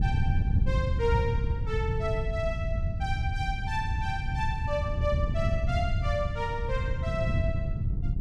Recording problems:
wind on the microphone; below 120 Hz, SNR -3 dB

